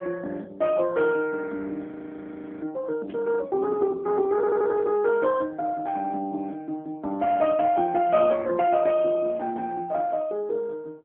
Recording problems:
telephone audio; 260 Hz to 3.1 kHz, AMR-NB
static burst; at 1 s and at 3 s; peak -16 dB vs average level
frozen audio; at 2 s for 0.5 s
stutter; at 4.5 s

